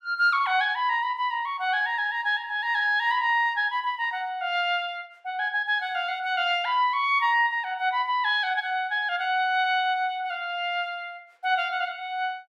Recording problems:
none

